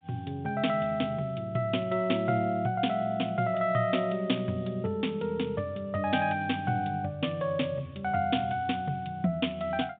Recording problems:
telephone audio; 130 Hz to 3.7 kHz, G.726

